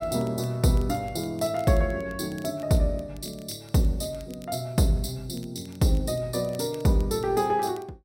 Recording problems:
crackle; vinyl, SNR 27 dB

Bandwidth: 16 kHz